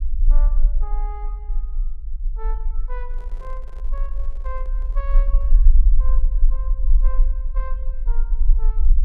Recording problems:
rumble; below 38 Hz, strongest tone 22 Hz, SNR -18 dB
microphone handling noise; from 3 to 5.5 s; peak -3 dB vs average level

